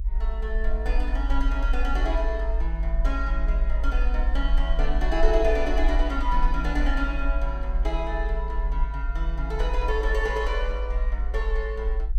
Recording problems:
rumble; below 50 Hz, SNR -3 dB

